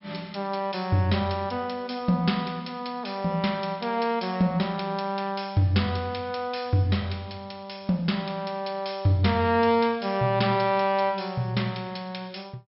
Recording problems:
treble missing; nothing above 5.4 kHz

